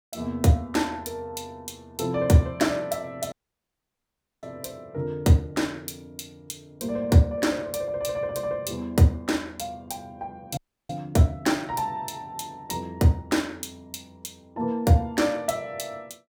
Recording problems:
dropout; at 3.5 s for 1 s and at 11 s

